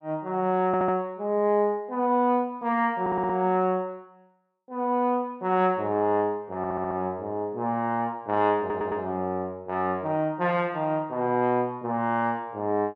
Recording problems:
stutter; 4 times, first at 0.5 s

